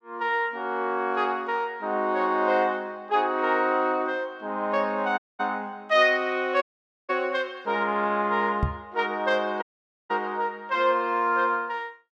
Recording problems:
dropout; at 5 s, at 6.5 s and at 9.5 s
microphone thump; at 8.5 s; peak +4 dB vs average level

